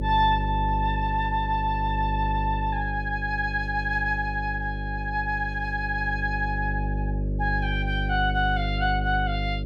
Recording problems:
mains hum; 50 Hz, harmonics up to 600 Hz, SNR 3 dB

